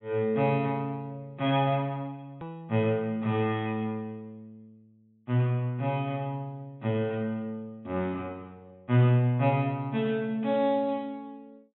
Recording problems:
treble missing; nothing above 3.8 kHz
click at an edit; at 2.5 s

